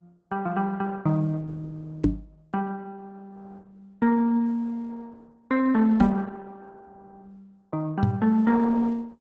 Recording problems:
codec artefacts; Opus, log-spectral distance 3 dB
knock on the microphone; at 2 s, at 6 s and at 8 s; peak +9 dB vs average level

